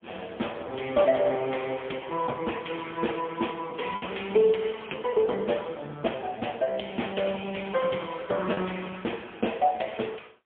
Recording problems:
phone line; 240 Hz to 3.4 kHz, AMR-NB, then MP3
packet loss; 1% of the sound replaced, filled with the last packet

